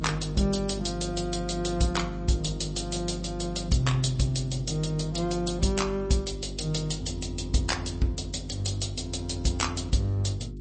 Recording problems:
codec artefacts; MP3, log-spectral distance 6 dB, nothing above 8.2 kHz
hum; 50 Hz, harmonics up to 400 Hz, SNR 9 dB

